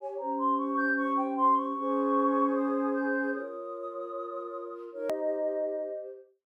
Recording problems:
hard cut with a click; at 5 s

